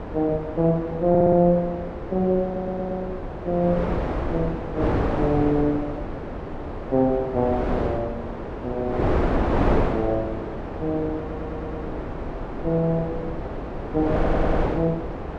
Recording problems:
wind noise; below 630 Hz, SNR 4 dB
stutter; 4 times, first at 1 s

